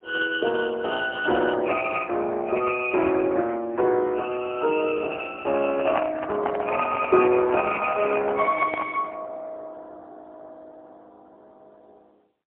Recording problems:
phone line; 280 Hz to 2.5 kHz, AMR-NB, then MP3
handling noise; from 5.5 to 9 s; peak +3 dB vs average level

